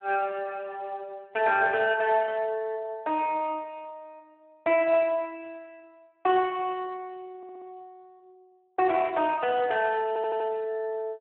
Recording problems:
telephone audio; 320 Hz to 3.4 kHz, Speex
stutter; at 7.5 s and at 10 s

